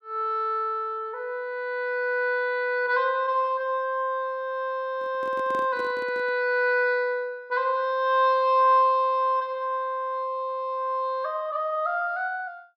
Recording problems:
microphone handling noise; from 5 to 6.5 s; peak -10 dB vs average level

